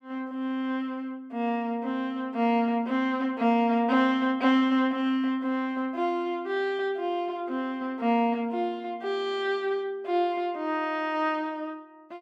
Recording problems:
none

